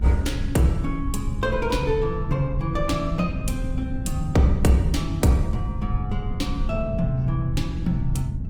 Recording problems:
lossy codec; Opus, log-spectral distance 2 dB, nothing above 19 kHz
electrical hum; 60 Hz, harmonics up to 1.1 kHz, SNR 24 dB
low-frequency rumble; below 110 Hz, SNR 5 dB

